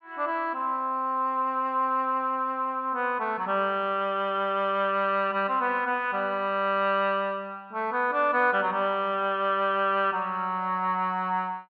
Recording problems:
none

